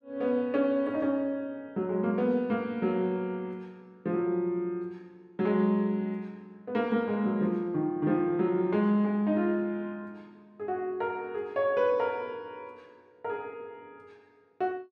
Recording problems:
none

